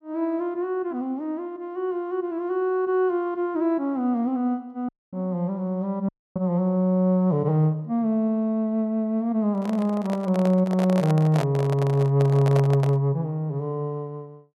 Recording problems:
audio cutting out; at 5 s and at 6 s
handling noise; from 9.5 to 13 s; peak -1 dB vs average level

